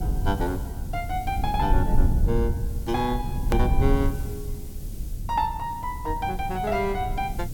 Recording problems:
hiss; slope +3 dB per octave, SNR 19 dB
rumble; below 86 Hz, SNR 1 dB
click at an edit; at 3.5 s

